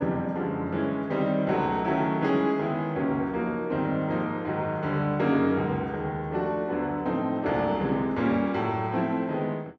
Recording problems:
none

